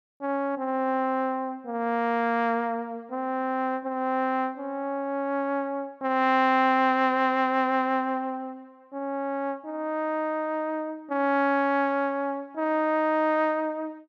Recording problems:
none

